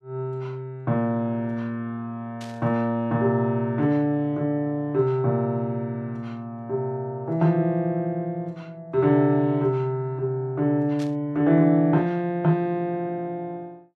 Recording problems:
static burst; at 2.5 s and at 11 s; peak -13 dB vs average level

